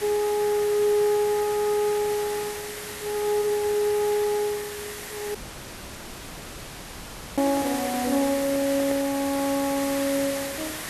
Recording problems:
background hiss; SNR 9 dB
audio cutting out; at 5.5 s for 2 s
handling noise; from 7.5 to 9.5 s; peak -8 dB vs average level

